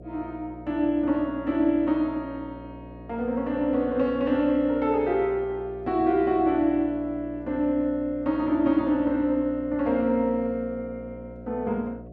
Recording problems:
hum; 60 Hz, harmonics up to 720 Hz, SNR 17 dB

